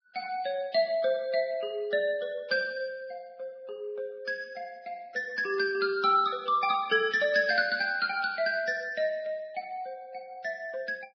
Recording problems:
codec artefacts; Vorbis, log-spectral distance 2 dB, nothing above 5 kHz

